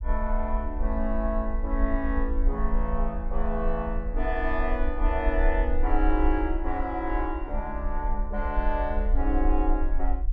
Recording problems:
rumble; below 46 Hz, strongest tone 26 Hz, SNR 0 dB

